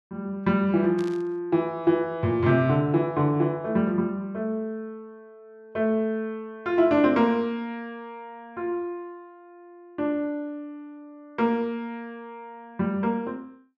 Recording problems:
static burst; at 1 s; peak -15 dB vs average level

